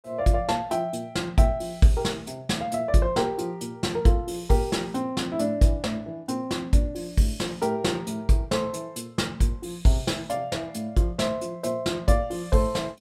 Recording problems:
none

